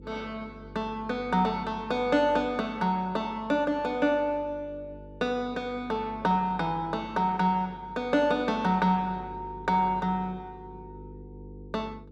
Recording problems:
hum; 50 Hz, harmonics up to 500 Hz, SNR 19 dB

